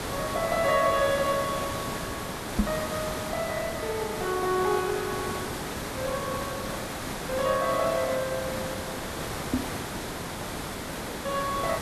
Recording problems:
background hiss; slope -5 dB per octave, SNR 4 dB
microphone bump; at 2.5 s and at 9.5 s; peak +7 dB vs average level

